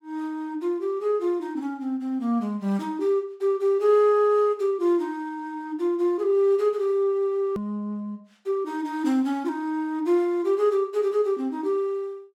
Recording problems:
click at an edit; at 7.5 s

